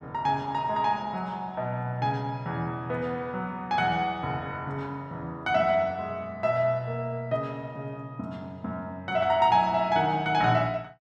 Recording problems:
none

